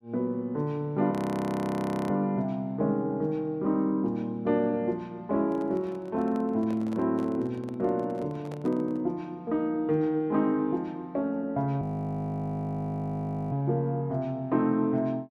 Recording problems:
audio freezing; at 1 s for 1 s and at 12 s for 1.5 s
handling noise; from 5.5 to 9 s; peak -10 dB vs average level

